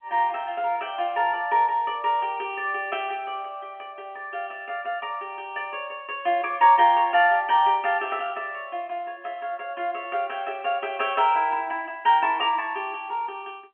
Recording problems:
phone line; 280 Hz to 3.2 kHz, G.711

